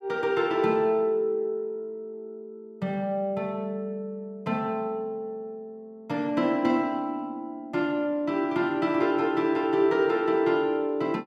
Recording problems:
none

